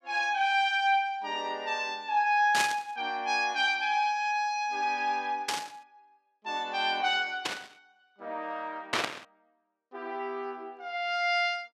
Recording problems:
burst of static; 4 times, first at 2.5 s; peak +4 dB vs average level

